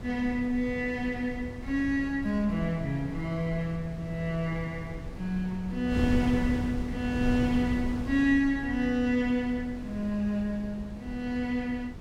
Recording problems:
wind noise; below 200 Hz, SNR 9 dB

